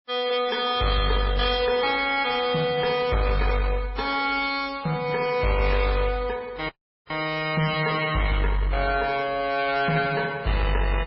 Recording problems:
lossy compression; MP3, then AAC, log-spectral distance 4 dB, nothing above 4.9 kHz
distortion; hard clipping, uneven, signal-to-distortion ratio 10 dB
dropout; at 6.5 s

